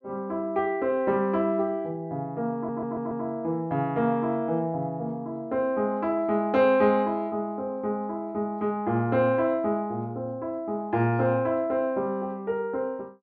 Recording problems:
stutter; at 2.5 s

